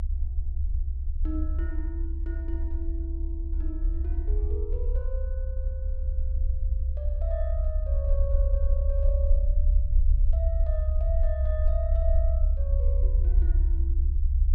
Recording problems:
rumble; below 68 Hz, SNR -12 dB

